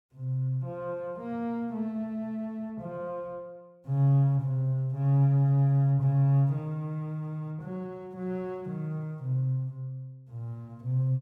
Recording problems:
none

